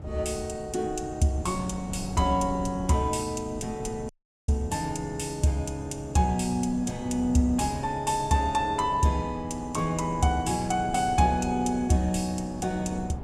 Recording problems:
wind on the microphone; below 270 Hz, SNR 13 dB
dropout; at 4 s

